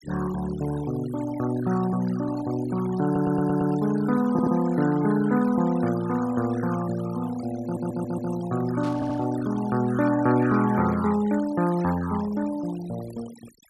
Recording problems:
noise reduction artefacts; signal-to-artefact ratio 16 dB
stutter; 4 times, first at 3 s
burst of static; at 9 s; peak -16 dB vs average level

